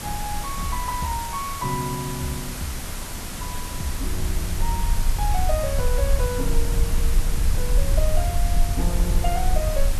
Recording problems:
background hiss; slope -1 dB per octave, SNR 3 dB
rumble; below 56 Hz, SNR -4 dB
wind noise; below 260 Hz, SNR 12 dB

